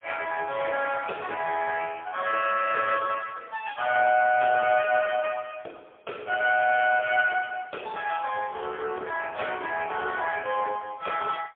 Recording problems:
telephone audio; 340 Hz to 3.3 kHz, AMR-NB, then MP3

